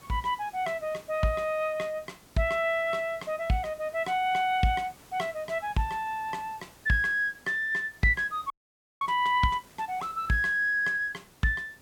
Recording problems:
hiss; slope -4 dB per octave, SNR 25 dB
frozen audio; at 8.5 s for 0.5 s

